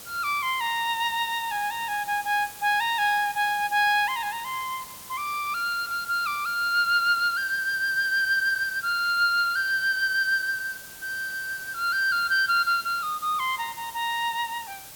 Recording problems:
background hiss; slope -1 dB per octave, SNR 15 dB

